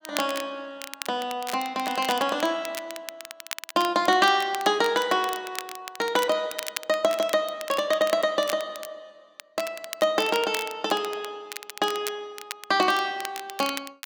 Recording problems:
crackling; vinyl, SNR 12 dB

